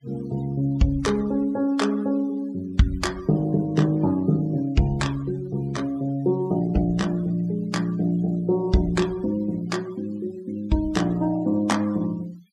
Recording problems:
noise reduction artefacts; signal-to-artefact ratio 23 dB

